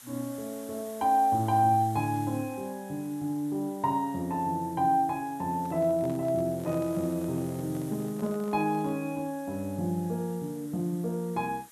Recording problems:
hiss; SNR 20 dB
handling noise; from 5.5 to 9 s; peak -11 dB vs average level

